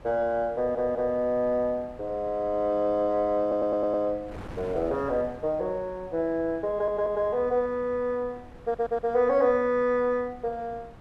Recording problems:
wind noise; below 630 Hz, SNR 20 dB
stutter; 4 times, first at 0.5 s

